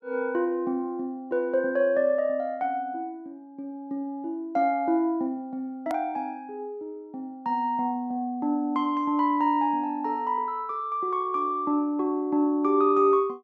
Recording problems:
click at an edit; at 6 s

